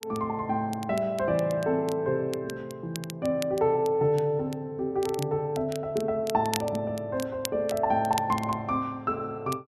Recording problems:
crackle; vinyl, SNR 14 dB

